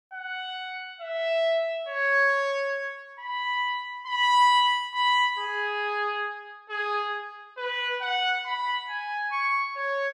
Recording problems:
none

